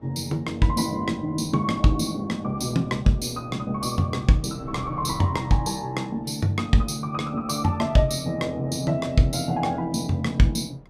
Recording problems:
wind noise; below 450 Hz, SNR 23 dB

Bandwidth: 15.5 kHz